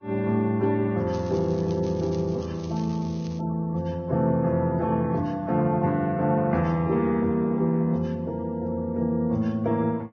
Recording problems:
lossy codec; Vorbis, log-spectral distance 2 dB, nothing above 6.2 kHz
crackling; from 1 to 3.5 s; loose cable, SNR 24 dB

